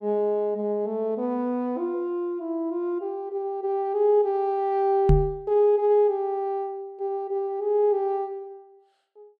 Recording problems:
microphone thump; at 5 s; peak +8 dB vs average level

